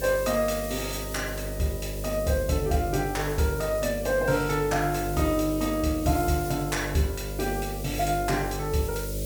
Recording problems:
mains hum; 50 Hz, harmonics up to 600 Hz, SNR 8 dB
background hiss; SNR 12 dB

